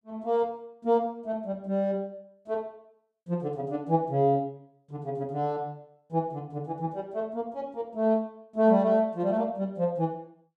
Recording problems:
none

